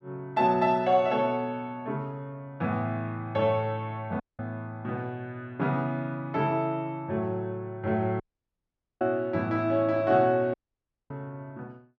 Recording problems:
dropout; at 4 s, at 8 s for 1 s and at 11 s for 0.5 s

